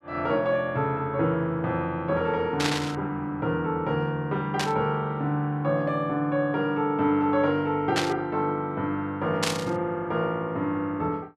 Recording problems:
burst of static; 4 times, first at 2.5 s; peak +4 dB vs average level

